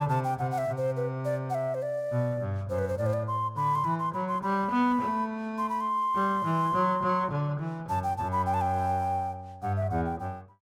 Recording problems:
none

